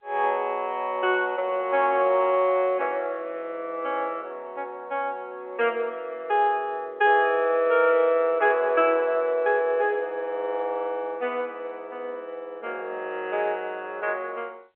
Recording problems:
telephone audio; 340 Hz to 3.3 kHz, G.711

